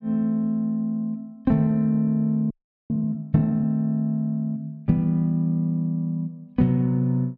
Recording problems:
audio freezing; at 2.5 s

